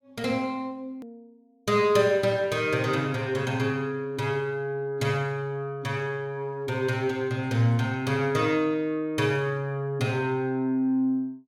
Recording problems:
click at an edit; at 1 s

